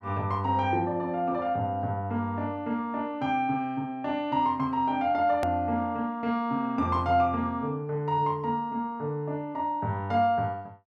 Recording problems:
click at an edit; at 5.5 s

